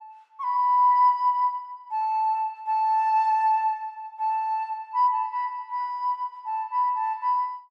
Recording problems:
none

